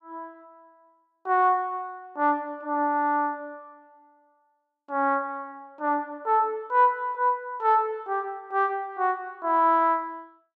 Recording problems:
none

